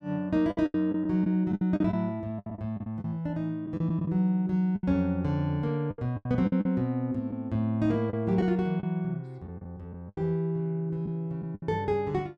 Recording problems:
lost packets; 10% of the sound replaced, filled with the last packet

